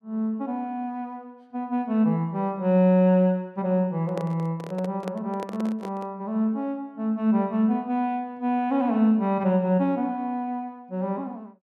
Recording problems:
microphone handling noise; from 4 to 6 s; peak -6 dB vs average level

